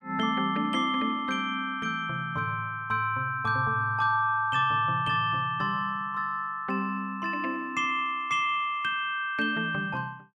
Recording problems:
none

